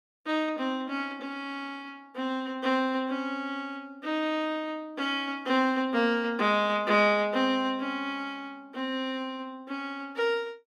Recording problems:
none

